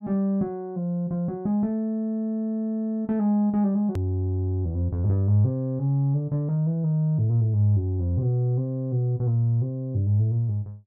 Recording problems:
hard cut with a click; at 4 s

